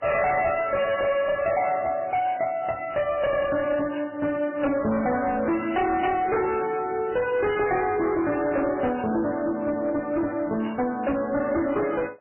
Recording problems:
codec artefacts; MP3, log-spectral distance 3 dB, nothing above 2.9 kHz
distorted audio; soft clipping, signal-to-distortion ratio 7 dB

